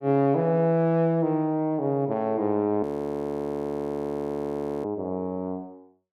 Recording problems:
frozen audio; at 3 s for 2 s

